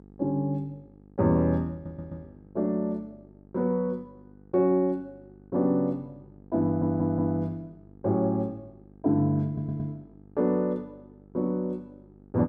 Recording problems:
electrical hum; 50 Hz, harmonics up to 900 Hz, SNR 24 dB
audio stuttering; at 1.5 s, at 6.5 s and at 9.5 s

